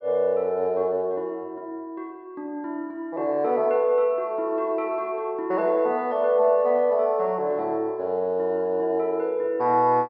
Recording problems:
treble missing; nothing above 5.5 kHz

